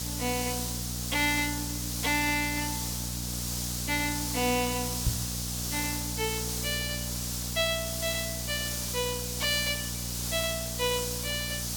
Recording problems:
electrical hum; 60 Hz, harmonics up to 780 Hz, SNR 7 dB
hiss; SNR 1 dB
knock on the microphone; at 5 s; peak +5 dB vs average level

